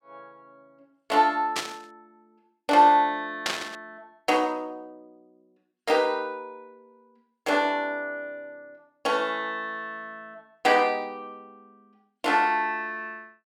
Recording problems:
burst of static; at 1.5 s and at 3.5 s; peak +2 dB vs average level

